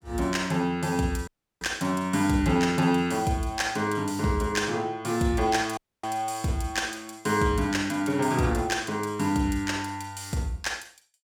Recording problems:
dropout; at 1.5 s and at 6 s

